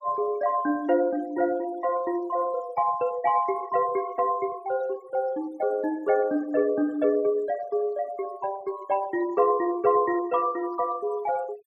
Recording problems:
denoising artefacts; signal-to-artefact ratio 23 dB

